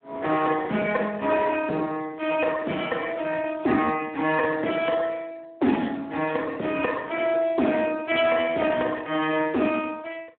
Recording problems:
phone line; 220 Hz to 3.3 kHz, Speex

